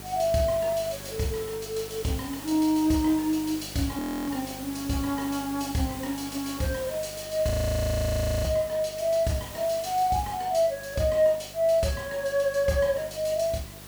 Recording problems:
hum; 50 Hz, harmonics up to 900 Hz, SNR 20 dB
background hiss; slope -2 dB per octave, SNR 14 dB
frozen audio; at 4 s and at 7.5 s for 1 s

